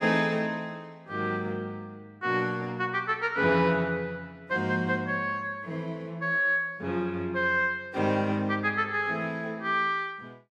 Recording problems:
none

